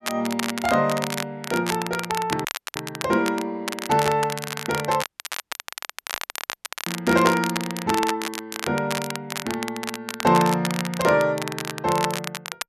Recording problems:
crackle; vinyl, SNR 7 dB
dropout; at 2.5 s and at 5 s for 2 s

